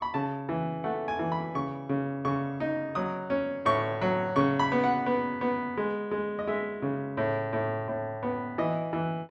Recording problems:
none

